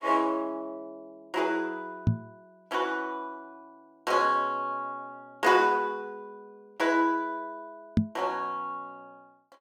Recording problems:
knock on the microphone; at 2 s and at 8 s; peak +9 dB vs average level

